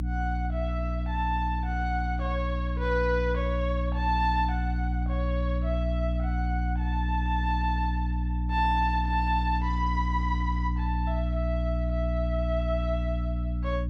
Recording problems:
hum; 60 Hz, harmonics up to 300 Hz, SNR -2 dB

